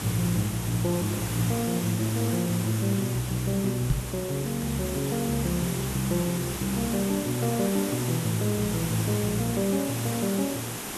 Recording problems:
background hiss; slope -3 dB per octave, SNR 6 dB
knock on the microphone; at 4 s; peak +5 dB vs average level

